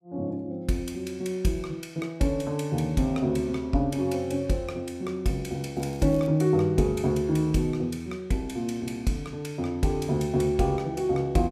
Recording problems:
crackle; at 6 s; loose cable, SNR 27 dB

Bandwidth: 14.5 kHz